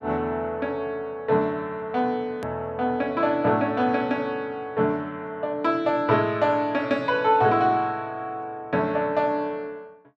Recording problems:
edit click; at 2.5 s

